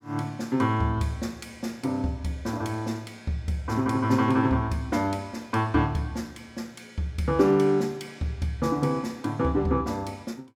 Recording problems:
none

